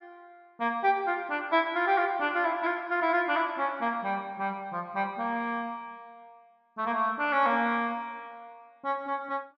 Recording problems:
none

